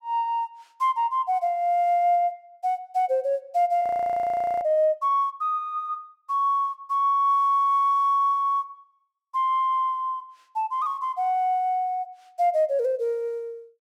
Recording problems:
frozen audio; at 4 s for 1 s

